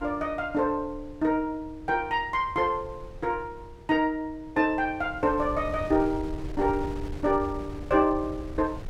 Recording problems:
wind noise; below 120 Hz, SNR 14 dB

